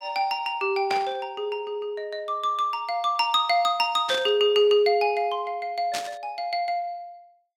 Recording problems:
burst of static; at 1 s, at 4 s and at 6 s; peak -2 dB vs average level

